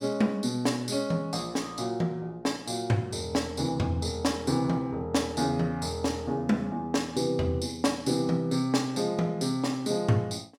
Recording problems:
none

